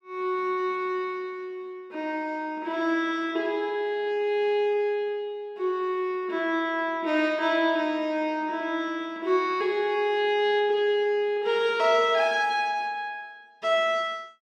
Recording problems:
none

